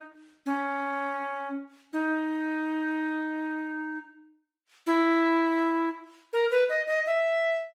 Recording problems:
codec artefacts; Opus, log-spectral distance 2 dB, nothing above 19.5 kHz

